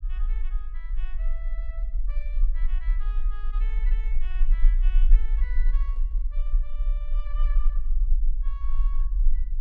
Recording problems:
low-frequency rumble; below 36 Hz, strongest tone 20 Hz, SNR -21 dB
microphone handling noise; from 3.5 to 6.5 s; peak -7 dB vs average level

